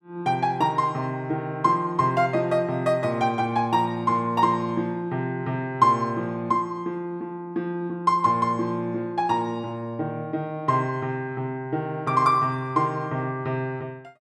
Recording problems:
none

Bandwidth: 12.5 kHz